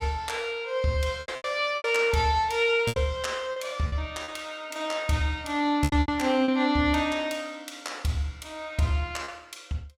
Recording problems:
lost packets; 7% of the sound replaced, filled with repeated pitch periods

